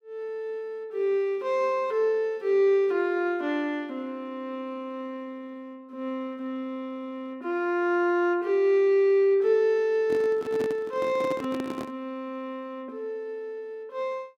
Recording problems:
handling noise; from 10 to 12 s; peak -3 dB vs average level

